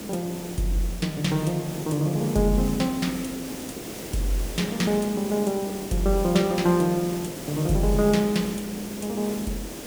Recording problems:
hiss; SNR 10 dB

